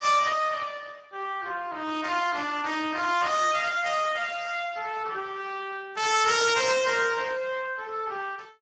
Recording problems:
lossy compression; Speex, log-spectral distance 6 dB, nothing above 7.3 kHz

